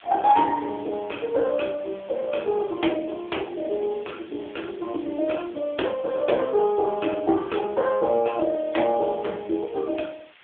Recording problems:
telephone audio; 260 Hz to 3.5 kHz, AMR-NB
hiss; SNR 25 dB

